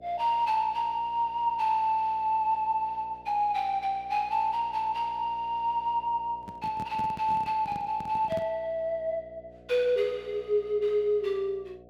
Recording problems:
hum; 60 Hz, harmonics up to 720 Hz, SNR 24 dB
microphone handling noise; from 6.5 to 8.5 s; peak -7 dB vs average level

